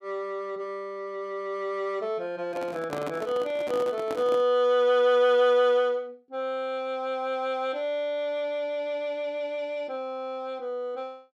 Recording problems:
microphone handling noise; from 2.5 to 4.5 s; peak -4 dB vs average level

